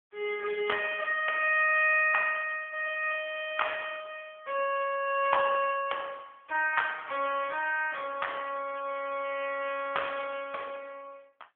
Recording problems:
phone line; 340 Hz to 3.3 kHz, AMR-NB

